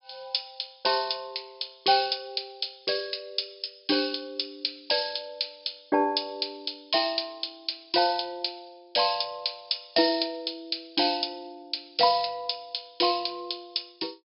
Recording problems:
treble missing; nothing above 5.5 kHz

